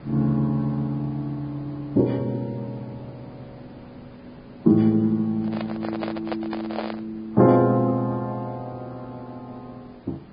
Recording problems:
treble cut off; nothing above 4.9 kHz
lossy codec; Vorbis, log-spectral distance 2 dB
background hiss; SNR 23 dB
handling noise; from 5.5 to 7 s; peak -2 dB vs average level

